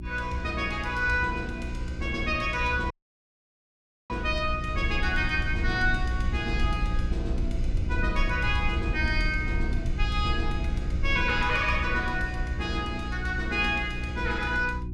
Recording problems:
electrical hum; 60 Hz, harmonics up to 360 Hz, SNR 8 dB
low-frequency rumble; below 74 Hz, SNR 6 dB
dropout; at 3 s for 1 s

